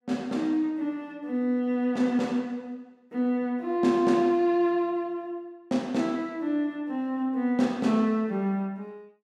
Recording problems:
none

